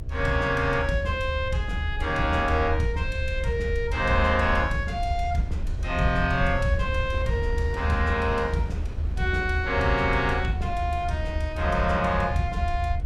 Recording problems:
electrical hum; 60 Hz, harmonics up to 660 Hz, SNR 21 dB
rumble; below 78 Hz, SNR 5 dB
wind on the microphone; below 200 Hz, SNR 16 dB

